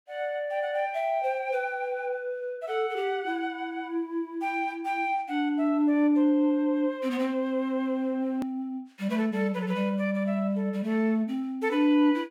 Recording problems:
hard cut with a click; at 8.5 s

